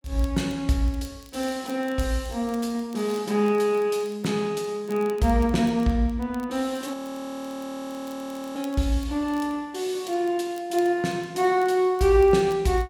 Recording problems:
crackle; vinyl, SNR 27 dB
audio freezing; at 7 s for 1.5 s

